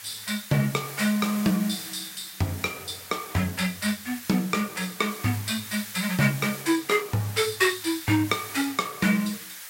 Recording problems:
hiss; SNR 12 dB

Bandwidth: 16 kHz